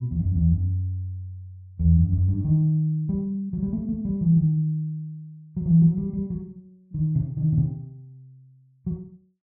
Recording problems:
none

